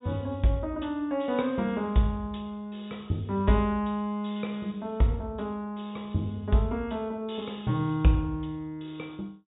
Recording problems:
treble missing; nothing above 4 kHz

